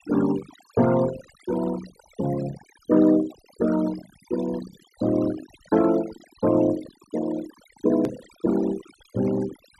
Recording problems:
noise reduction artefacts; signal-to-artefact ratio 14 dB
edit click; at 8 s

